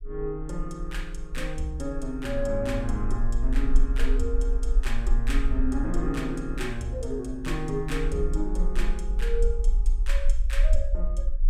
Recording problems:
low-frequency rumble; below 40 Hz, strongest tone 22 Hz, SNR -1 dB

